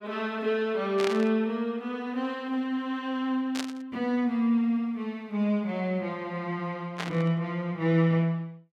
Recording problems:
static burst; at 1 s, at 3.5 s and at 7 s; peak -1 dB vs average level

